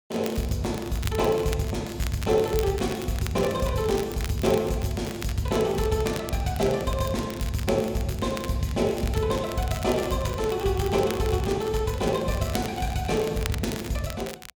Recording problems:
crackling; vinyl, SNR 14 dB

